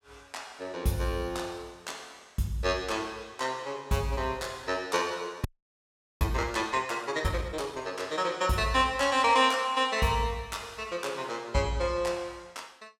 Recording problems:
audio freezing; at 5.5 s for 1 s

